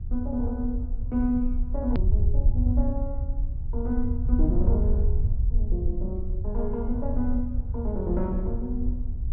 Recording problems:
treble missing; nothing above 5.2 kHz
hum; 60 Hz, harmonics up to 1.2 kHz, SNR 26 dB
rumble; below 70 Hz, SNR -3 dB
edit click; at 2 s

